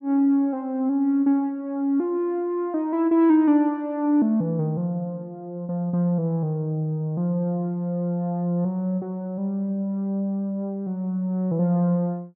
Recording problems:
none

